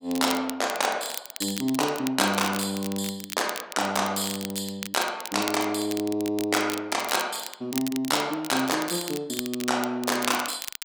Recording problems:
crackling; vinyl, SNR 9 dB

